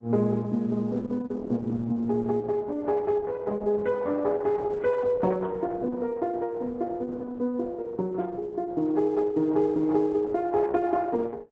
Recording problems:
codec artefacts; AAC, then Opus, log-spectral distance 2 dB, nothing above 7.6 kHz

